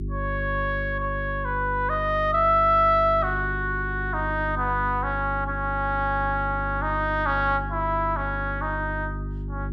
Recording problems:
electrical hum; 50 Hz, harmonics up to 400 Hz, SNR 8 dB

